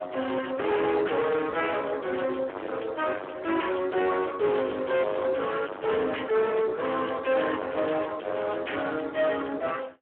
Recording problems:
telephone audio; 240 Hz to 3.2 kHz, Speex
distorted audio; hard clipping, signal-to-distortion ratio 6 dB

